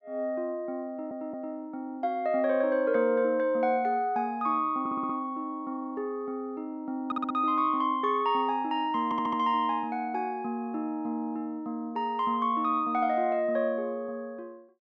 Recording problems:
audio stuttering; 4 times, first at 1 s

